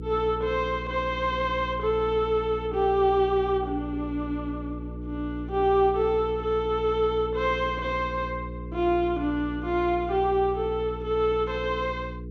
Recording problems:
hum; 60 Hz, harmonics up to 480 Hz, SNR 11 dB

